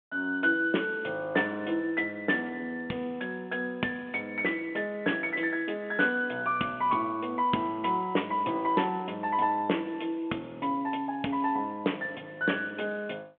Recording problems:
telephone audio; 220 Hz to 3.4 kHz, G.726

